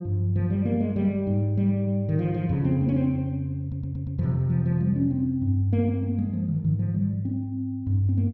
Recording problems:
stutter; at 3.5 s

